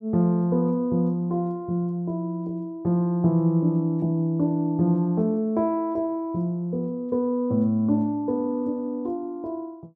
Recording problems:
none

